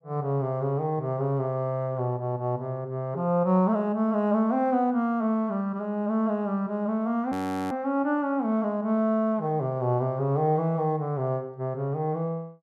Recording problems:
frozen audio; at 7.5 s

